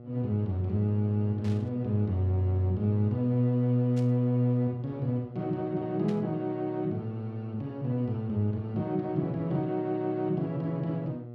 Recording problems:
hum; 60 Hz, harmonics up to 720 Hz, SNR 14 dB
burst of static; at 1.5 s, at 4 s and at 6 s; peak -14 dB vs average level

